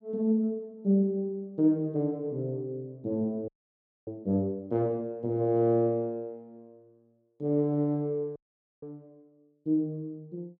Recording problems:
audio freezing; at 3.5 s for 0.5 s and at 8.5 s

